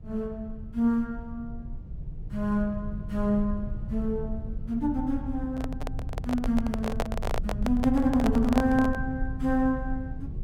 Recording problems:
rumble; below 92 Hz, SNR 8 dB
handling noise; from 5.5 to 9 s; peak +3 dB vs average level

